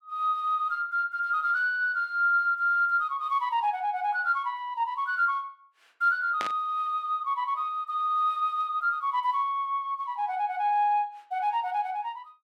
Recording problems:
static burst; at 6.5 s; peak -2 dB vs average level

